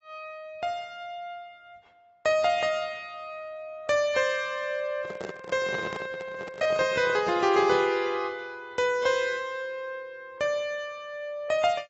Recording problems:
lossy compression; AAC, log-spectral distance 2 dB, nothing above 6.9 kHz
microphone handling noise; from 5 to 8 s; peak -3 dB vs average level

